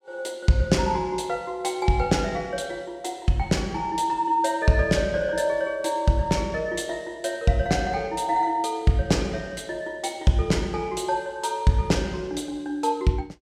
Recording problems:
none

